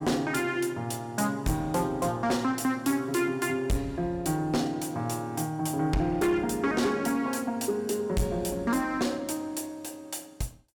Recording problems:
distortion; soft clipping, signal-to-distortion ratio 10 dB

